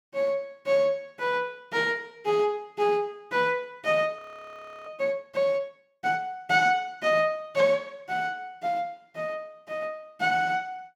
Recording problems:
audio freezing; at 4 s for 0.5 s

